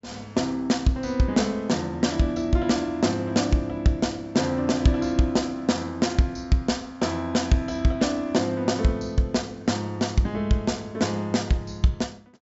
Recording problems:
treble cut off; nothing above 8 kHz

